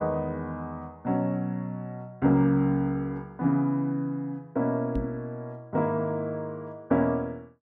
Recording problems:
knock on the microphone; at 5 s; peak 0 dB vs average level

